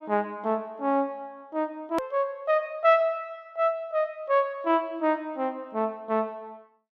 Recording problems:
edit click; at 2 s

